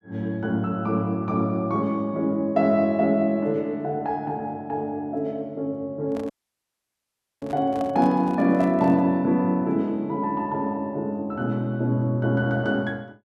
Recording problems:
handling noise; from 6 to 9 s; peak -9 dB vs average level
audio cutting out; at 6.5 s for 1 s

